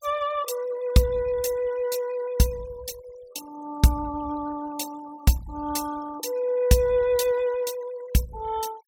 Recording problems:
denoising artefacts; signal-to-artefact ratio 19 dB

